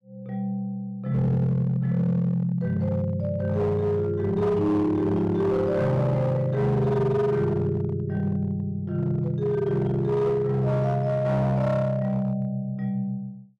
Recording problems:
distorted audio; hard clipping, signal-to-distortion ratio 12 dB

